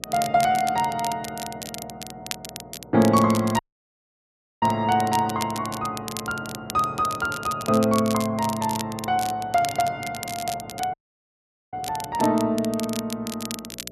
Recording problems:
mains hum; 60 Hz, harmonics up to 660 Hz, SNR 24 dB
crackle; vinyl, SNR 12 dB
dropout; at 3.5 s for 1 s and at 11 s for 1 s

